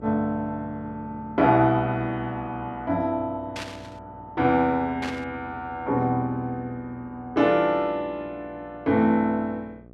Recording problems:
mains hum; 60 Hz, harmonics up to 780 Hz, SNR 23 dB
static burst; at 3.5 s and at 5 s; peak -5 dB vs average level

